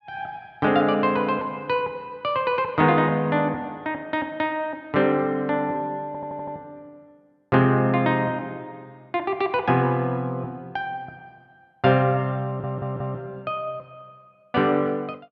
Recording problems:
stutter; at 6 s and at 12 s

